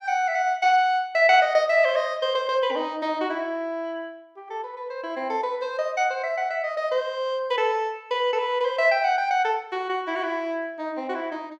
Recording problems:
none

